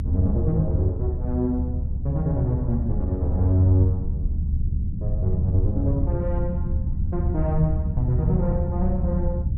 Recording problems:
rumble; below 96 Hz, SNR 1 dB

